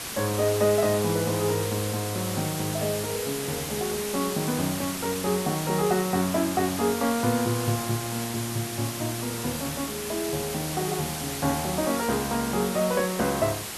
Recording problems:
background hiss; slope -1 dB per octave, SNR 5 dB

